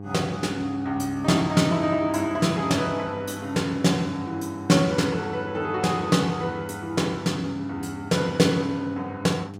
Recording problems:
hum; 50 Hz, harmonics up to 1.1 kHz, SNR 14 dB

